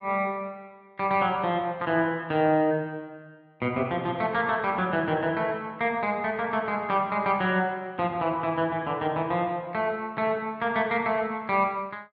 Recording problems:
none

